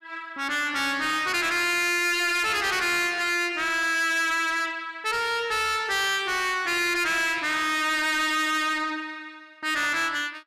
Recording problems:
distorted audio; soft clipping, signal-to-distortion ratio 7 dB

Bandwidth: 14.5 kHz